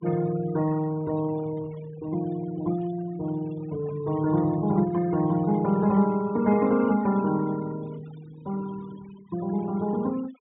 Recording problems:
treble cut off; nothing above 4 kHz
noise reduction artefacts; signal-to-artefact ratio 19 dB

